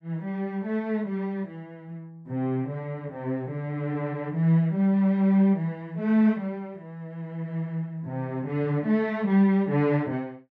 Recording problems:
none

